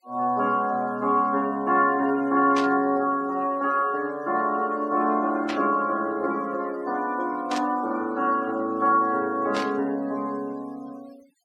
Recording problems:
noise reduction artefacts; signal-to-artefact ratio 26 dB
burst of static; 4 times, first at 2.5 s; peak -4 dB vs average level

